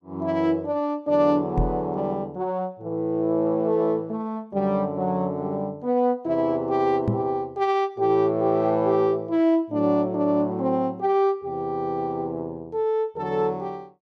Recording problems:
microphone bump; at 1.5 s and at 7 s; peak +3 dB vs average level

